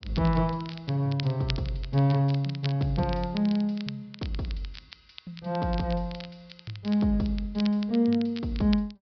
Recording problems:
low-pass filter; nothing above 5.5 kHz
crackling; vinyl, SNR 17 dB

